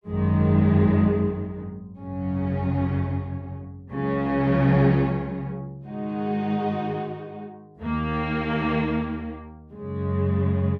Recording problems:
none

